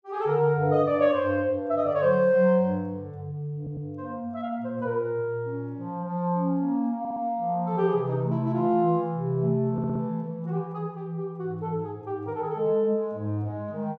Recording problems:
stutter; at 3.5 s, at 7 s and at 9.5 s

